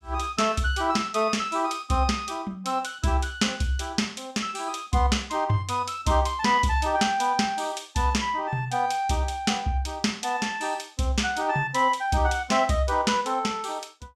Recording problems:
none

